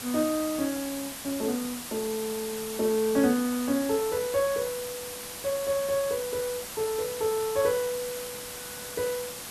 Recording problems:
hiss; slope -1 dB per octave, SNR 7 dB

